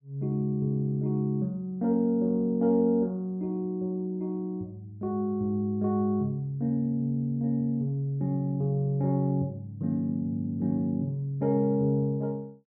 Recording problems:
none

